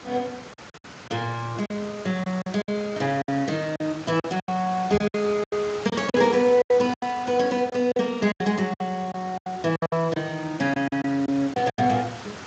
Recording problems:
lossy compression; Speex, log-spectral distance 6 dB, nothing above 7.3 kHz
hiss; SNR 15 dB
packet loss; 12% of the sound replaced, filled with silence
microphone thump; at 5 s; peak -4 dB vs average level

